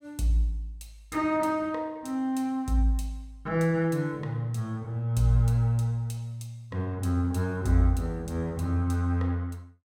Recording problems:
none

